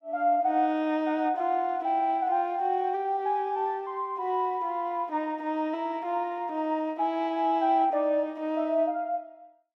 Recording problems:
none

